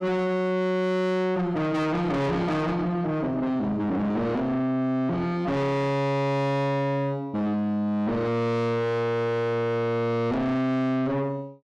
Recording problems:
distortion; soft clipping, signal-to-distortion ratio 7 dB

